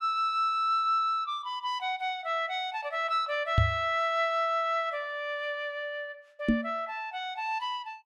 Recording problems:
microphone bump; at 3.5 s and at 6.5 s; peak +8 dB vs average level

